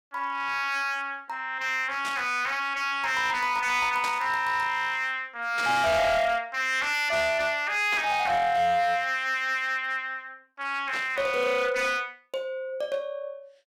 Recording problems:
distorted audio; hard clipping, signal-to-distortion ratio 11 dB
burst of static; 5 times, first at 2 s; peak -5 dB vs average level

